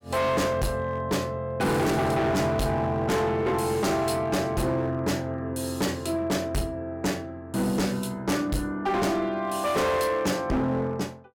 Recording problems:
distortion; hard clipping, signal-to-distortion ratio 6 dB

